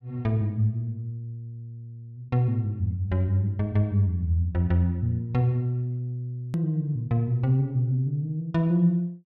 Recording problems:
click at an edit; at 6.5 s

